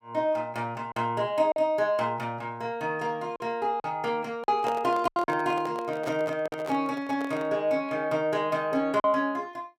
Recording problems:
packet loss; 4% of the sound replaced, filled with silence
microphone handling noise; from 4.5 to 7.5 s; peak -2 dB vs average level

